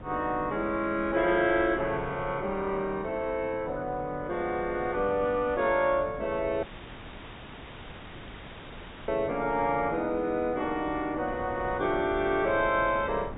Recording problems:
treble cut off; nothing above 4 kHz
wind on the microphone; below 450 Hz, SNR 16 dB
audio cutting out; at 6.5 s for 2.5 s

